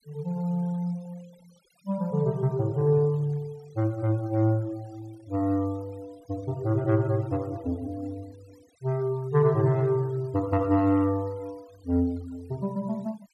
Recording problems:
denoising artefacts; signal-to-artefact ratio 28 dB

